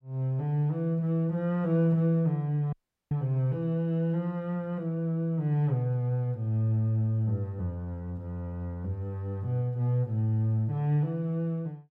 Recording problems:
dropout; at 2.5 s

